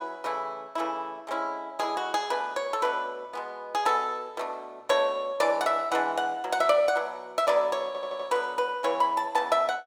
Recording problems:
stutter; at 8 s

